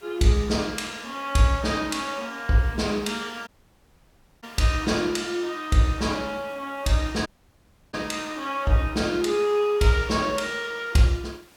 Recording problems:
background hiss; slope -2 dB per octave, SNR 27 dB
audio cutting out; at 3.5 s for 1 s and at 7.5 s for 0.5 s

